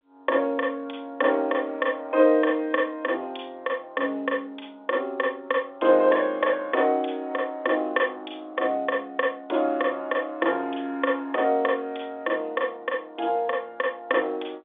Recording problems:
telephone audio; 260 Hz to 3.6 kHz, G.711

